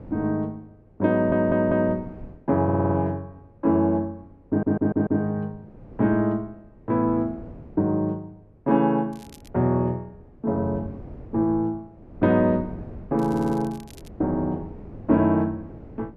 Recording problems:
wind on the microphone; below 330 Hz, SNR 20 dB
stutter; 4 times, first at 1 s
crackling; at 9 s and at 13 s; loose cable, SNR 27 dB

